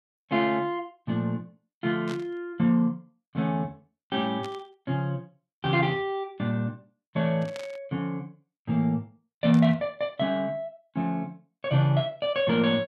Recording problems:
static burst; 4 times, first at 2 s; peak -9 dB vs average level

